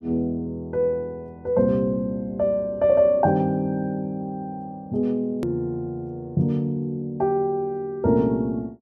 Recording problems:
click at an edit; at 5.5 s

